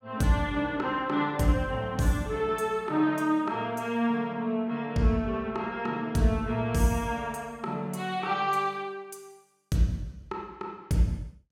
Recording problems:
none

